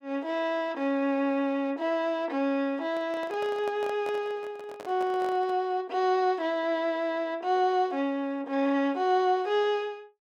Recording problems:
microphone handling noise; from 3 to 5.5 s; peak -8 dB vs average level

